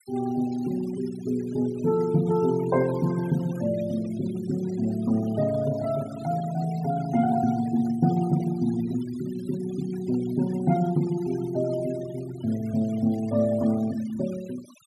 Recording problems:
noise reduction artefacts; signal-to-artefact ratio 19 dB

